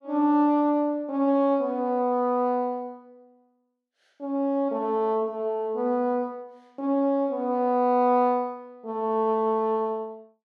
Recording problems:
none

